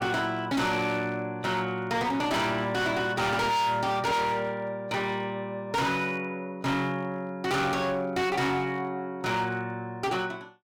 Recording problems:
distorted audio; hard clipping, signal-to-distortion ratio 7 dB

